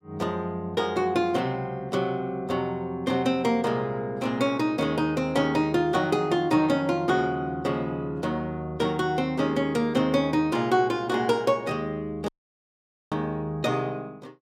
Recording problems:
audio cutting out; at 12 s for 1 s

